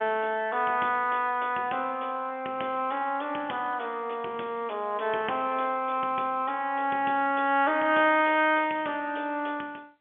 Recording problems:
phone line; 240 Hz to 3.4 kHz, G.711

